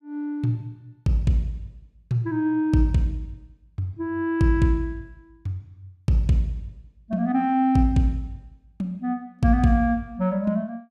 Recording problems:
none

